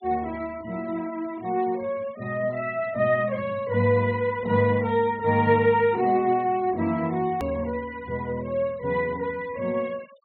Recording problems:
treble cut off; nothing above 4.3 kHz
denoising artefacts; signal-to-artefact ratio 25 dB
edit click; at 7.5 s

